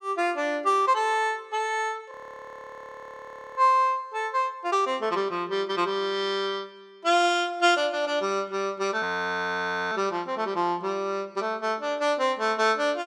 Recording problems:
frozen audio; at 2 s for 1.5 s and at 9 s for 1 s

